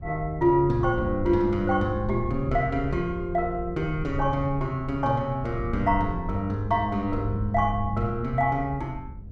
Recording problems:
wind noise; below 100 Hz, SNR 10 dB

